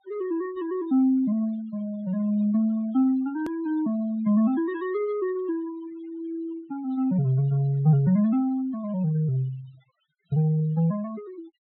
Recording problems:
treble missing; nothing above 4.1 kHz
noise reduction artefacts; signal-to-artefact ratio 23 dB
click at an edit; at 3.5 s

